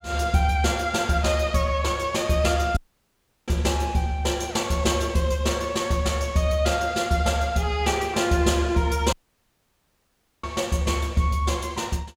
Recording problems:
dropout; at 3 s for 0.5 s and at 9 s for 1.5 s

